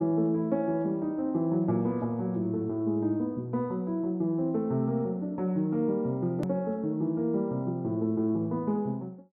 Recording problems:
hard cut with a click; at 6.5 s

